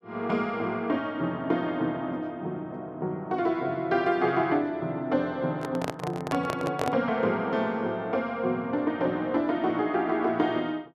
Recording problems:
microphone handling noise; from 5.5 to 7 s; peak +1 dB vs average level

